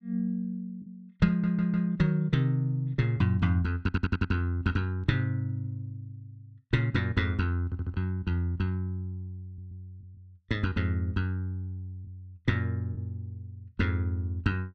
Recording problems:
lost packets; 1.1% of the sound replaced, filled with the last packet
stutter; 4 times, first at 1.5 s

